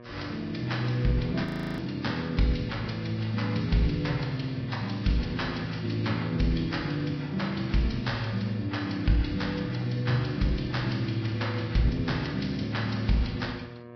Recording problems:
lossy compression; Vorbis, log-spectral distance 6 dB, nothing above 5.5 kHz
hum; 60 Hz, harmonics up to 1.8 kHz, SNR 17 dB
audio freezing; at 1.5 s

